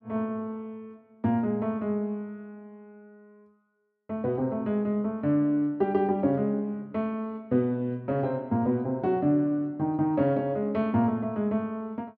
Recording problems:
none

